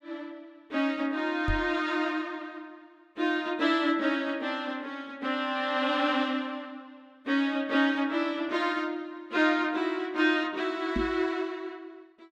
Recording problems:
knock on the microphone; at 1.5 s and at 11 s; peak +1 dB vs average level

